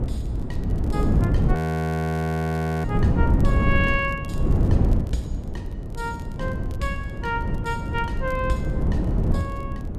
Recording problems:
wind on the microphone; below 190 Hz, SNR -5 dB
crackling; vinyl, SNR 26 dB
audio freezing; at 1.5 s for 1.5 s

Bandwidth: 14 kHz